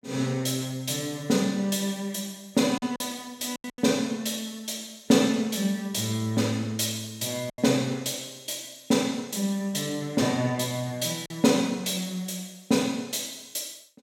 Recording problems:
packet loss; 3% of the sound replaced, filled with silence

